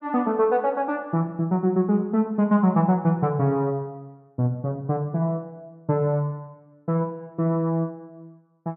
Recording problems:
none

